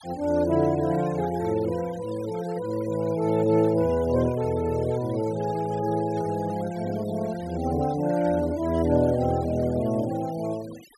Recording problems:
denoising artefacts; signal-to-artefact ratio 20 dB

